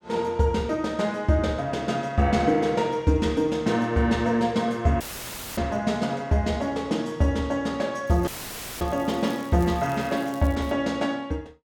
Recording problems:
dropout; at 5 s for 0.5 s and at 8.5 s for 0.5 s; filled with static
crackle; from 8 to 11 s; loose cable, SNR 24 dB

